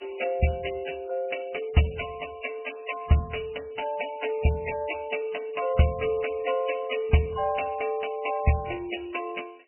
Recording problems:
codec artefacts; MP3, log-spectral distance 10 dB, nothing above 2.7 kHz

